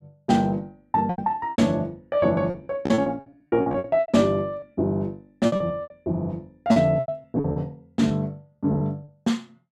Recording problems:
lost packets; 16% of the sound replaced, filled with repeated pitch periods

